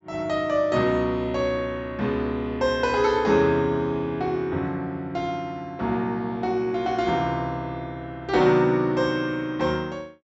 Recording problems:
treble cut off; nothing above 8 kHz

